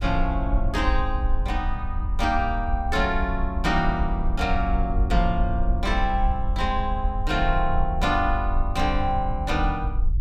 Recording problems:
low-frequency rumble; below 60 Hz, SNR 2 dB

